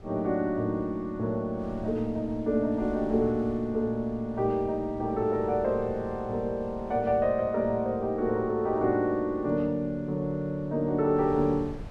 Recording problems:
wind noise; below 220 Hz, SNR 19 dB

